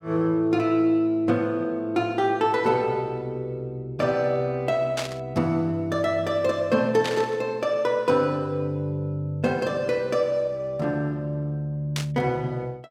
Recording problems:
static burst; at 5 s, at 7 s and at 12 s; peak -1 dB vs average level

